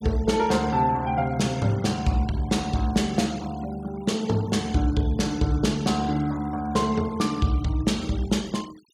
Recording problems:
denoising artefacts; signal-to-artefact ratio 21 dB

